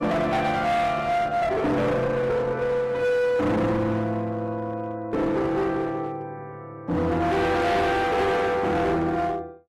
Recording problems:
codec artefacts; AAC, log-spectral distance 2 dB, nothing above 13.1 kHz
distorted audio; hard clipping, uneven, signal-to-distortion ratio 6 dB

